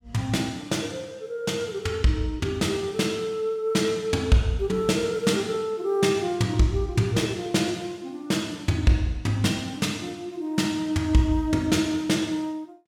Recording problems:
none

